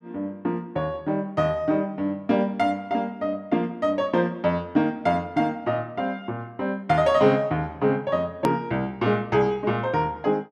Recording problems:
edit click; at 8.5 s

